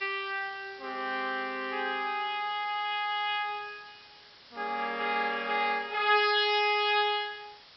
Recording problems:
low-pass filter; nothing above 5.5 kHz
hiss; slope +1 dB per octave, SNR 22 dB

